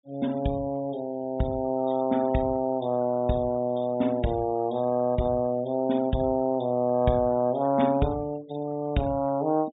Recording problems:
low-pass filter; nothing above 4 kHz
denoising artefacts; signal-to-artefact ratio 24 dB

